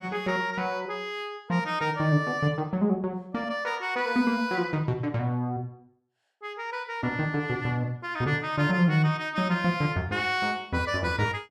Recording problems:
none

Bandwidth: 14.5 kHz